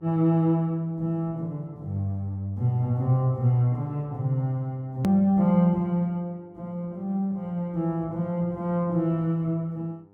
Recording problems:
mains hum; 50 Hz, harmonics up to 1.4 kHz, SNR 30 dB
click at an edit; at 5 s

